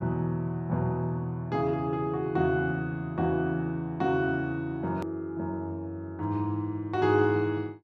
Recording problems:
edit click; at 5 s

